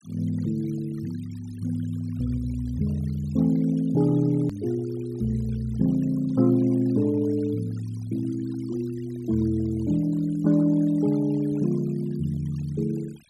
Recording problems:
denoising artefacts; signal-to-artefact ratio 24 dB
hard cut with a click; at 4.5 s

